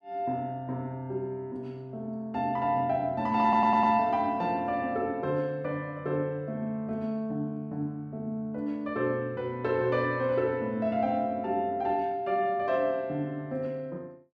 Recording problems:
audio stuttering; at 3.5 s

